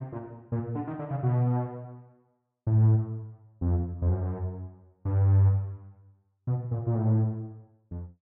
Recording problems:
none

